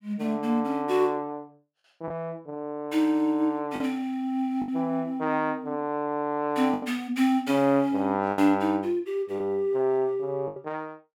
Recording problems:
packet loss; 3% of the sound replaced, filled with the last packet

